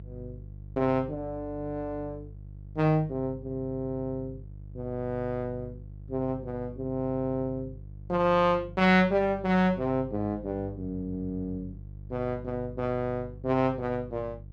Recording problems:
electrical hum; 50 Hz, harmonics up to 350 Hz, SNR 15 dB

